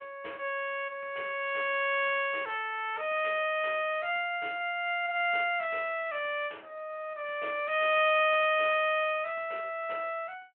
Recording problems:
phone line; 340 Hz to 3.2 kHz, Speex

